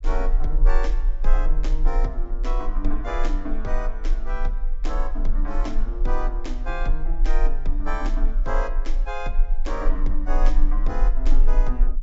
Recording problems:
low-pass filter; nothing above 8 kHz
low-frequency rumble; below 32 Hz, strongest tone 20 Hz, SNR -6 dB

